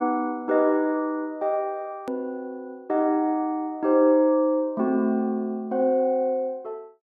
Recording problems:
click at an edit; at 2 s

